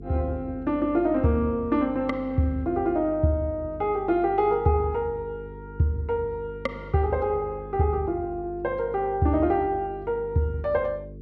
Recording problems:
hum; 50 Hz, harmonics up to 450 Hz, SNR 16 dB

